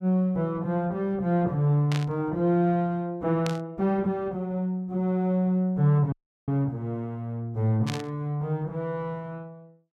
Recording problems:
static burst; at 2 s, at 3.5 s and at 8 s; peak -4 dB vs average level
dropout; at 6 s

